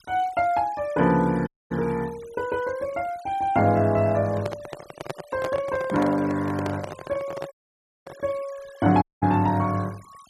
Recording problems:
denoising artefacts; signal-to-artefact ratio 22 dB
dropout; at 1.5 s, at 7.5 s for 0.5 s and at 9 s
microphone handling noise; from 4 to 8 s; peak -3 dB vs average level

